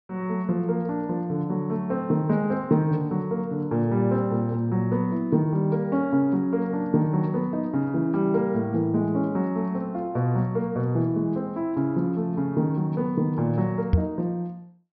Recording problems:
treble missing; nothing above 5.7 kHz
knock on the microphone; at 14 s; peak +9 dB vs average level

